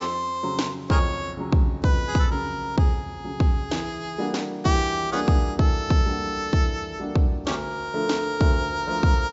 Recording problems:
treble cut off; nothing above 8 kHz

